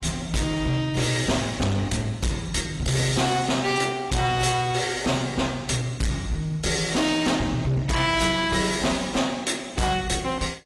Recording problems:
lossy compression; AAC, log-spectral distance 5 dB, nothing above 11 kHz
distorted audio; hard clipping, signal-to-distortion ratio 7 dB

